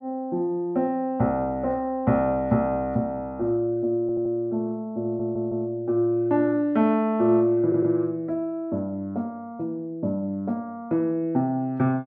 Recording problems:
stutter; at 4 s, at 5 s and at 7.5 s

